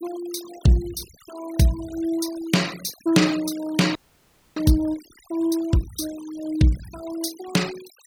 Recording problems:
noise reduction artefacts; signal-to-artefact ratio 17 dB
audio freezing; at 4 s for 0.5 s

